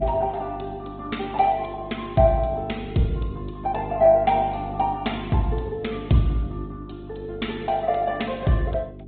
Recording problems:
treble cut off; nothing above 3.9 kHz
codec artefacts; Opus, log-spectral distance 4 dB
electrical hum; 50 Hz, harmonics up to 400 Hz, SNR 14 dB

